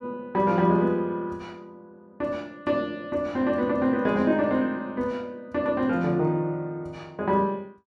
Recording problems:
none

